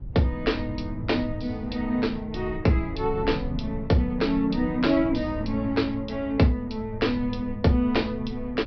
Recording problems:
treble missing; nothing above 5.5 kHz
rumble; below 110 Hz, SNR 12 dB

